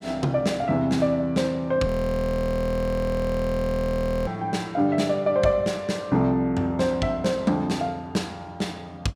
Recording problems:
frozen audio; at 2 s for 2.5 s

